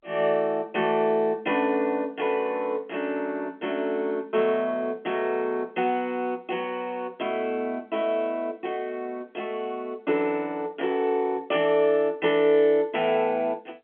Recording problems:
phone line; 260 Hz to 3.3 kHz, G.711

